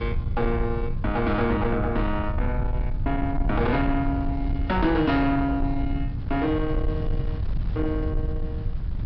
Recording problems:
low-pass filter; nothing above 5.5 kHz
distorted audio; soft clipping, signal-to-distortion ratio 12 dB
rumble; below 100 Hz, SNR 4 dB
wind noise; below 1.5 kHz, SNR 23 dB

